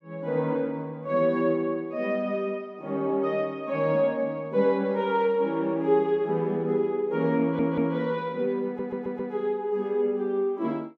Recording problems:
audio stuttering; at 7.5 s and at 8.5 s

